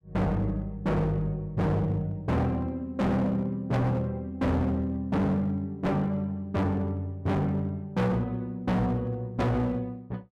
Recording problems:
distortion; hard clipping, signal-to-distortion ratio 6 dB

